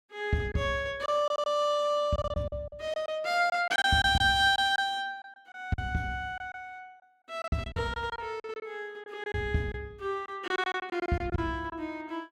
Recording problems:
packet loss; 10% of the sound replaced, filled with silence

